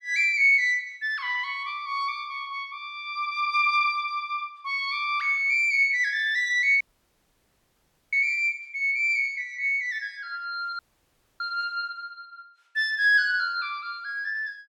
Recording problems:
dropout; at 7 s for 1.5 s and at 11 s for 0.5 s

